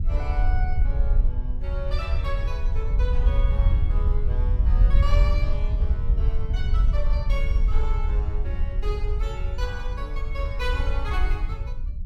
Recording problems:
wind noise; below 62 Hz, SNR -10 dB

